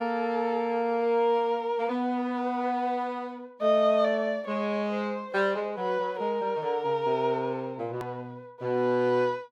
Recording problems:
edit click; at 8 s

